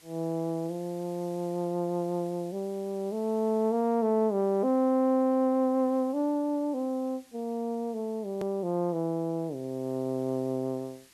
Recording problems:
hiss; SNR 27 dB
hard cut with a click; at 8.5 s

